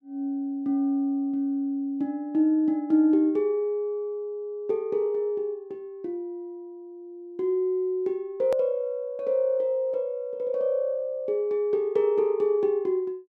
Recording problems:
hard cut with a click; at 8.5 s

